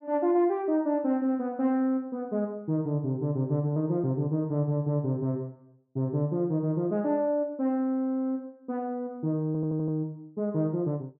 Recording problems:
stutter; at 9.5 s

